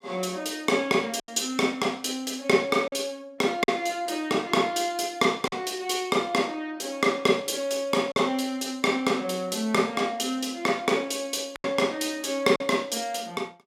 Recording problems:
packet loss; 3% of the sound replaced, filled with silence

